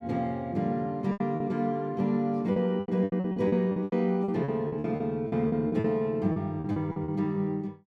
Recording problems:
packet loss; 14% of the sound replaced, filled with repeated pitch periods

